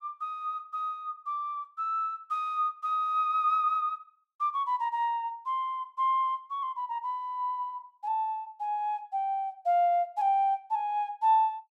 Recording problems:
none

